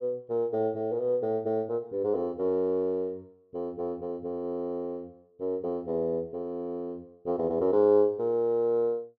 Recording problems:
none

